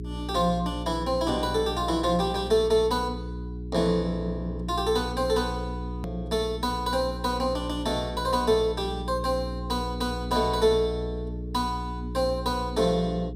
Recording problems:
electrical hum; 60 Hz, harmonics up to 420 Hz, SNR 8 dB
hard cut with a click; at 6 s

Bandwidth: 14.5 kHz